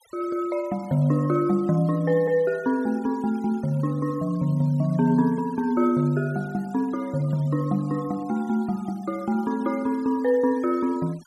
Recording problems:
denoising artefacts; signal-to-artefact ratio 27 dB

